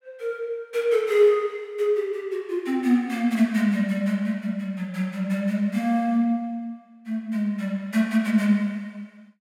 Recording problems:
none

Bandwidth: 16.5 kHz